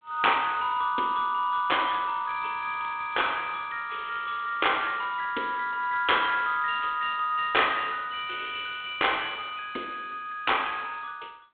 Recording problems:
phone line; 240 Hz to 3.6 kHz, G.726
crackle; from 2 to 4.5 s and at 6.5 s; loose cable, SNR 27 dB

